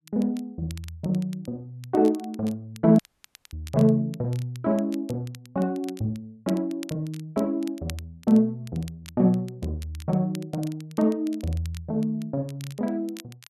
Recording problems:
crackle; vinyl, SNR 22 dB
audio cutting out; at 3 s for 0.5 s

